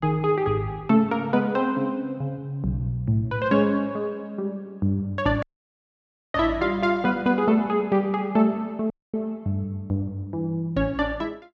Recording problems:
dropout; at 5.5 s for 1 s and at 9 s

